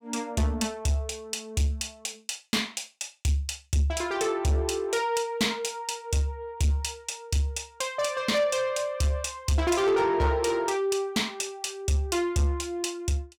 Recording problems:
distorted audio; soft clipping, signal-to-distortion ratio 12 dB

